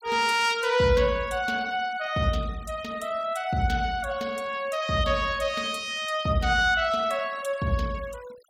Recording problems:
denoising artefacts; signal-to-artefact ratio 22 dB

